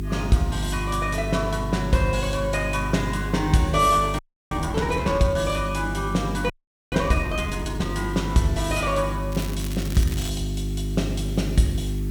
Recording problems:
mains hum; 50 Hz, harmonics up to 400 Hz, SNR 5 dB
hiss; slope -1 dB per octave, SNR 25 dB
frozen audio; at 4 s and at 6.5 s
crackle; at 9.5 s; loose cable, SNR 13 dB

